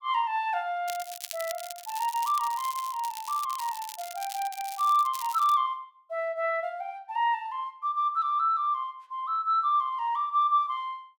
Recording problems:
crackle; from 1 to 5.5 s; loose cable, SNR 13 dB

